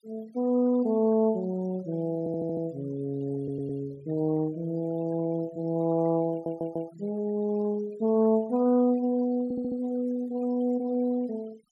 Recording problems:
denoising artefacts; signal-to-artefact ratio 24 dB
stutter; 4 times, first at 2 s

